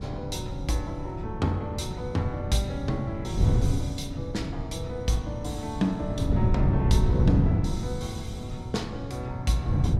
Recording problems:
wind noise; below 160 Hz, SNR -1 dB

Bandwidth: 16 kHz